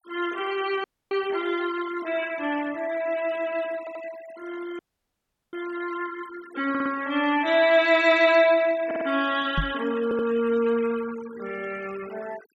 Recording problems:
noise reduction artefacts; signal-to-artefact ratio 19 dB
dropout; at 1 s and at 5 s for 0.5 s
stutter; 4 times, first at 4 s
microphone thump; at 9.5 s; peak +1 dB vs average level

